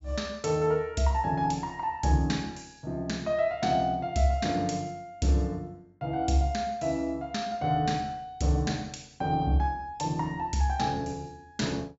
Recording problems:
treble cut off; nothing above 8 kHz

